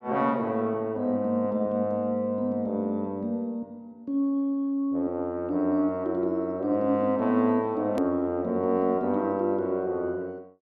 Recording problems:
hard cut with a click; at 8 s

